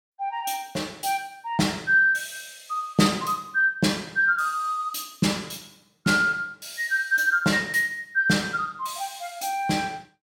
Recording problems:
none

